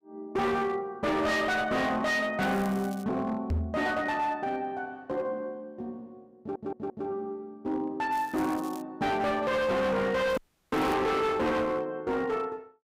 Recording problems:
distortion; hard clipping, signal-to-distortion ratio 8 dB
crackling; at 2.5 s, at 8 s and at 10 s; loose cable, SNR 22 dB
knock on the microphone; at 3.5 s; peak +3 dB vs average level
stutter; at 6.5 s
audio cutting out; at 10 s

